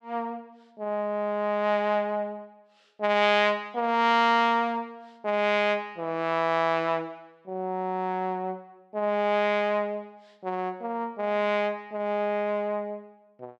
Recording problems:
none

